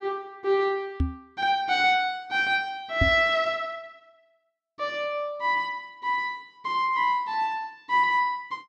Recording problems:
microphone bump; at 1 s and at 3 s; peak +4 dB vs average level

